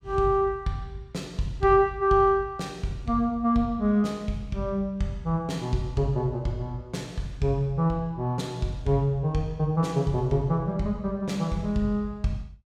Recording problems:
none

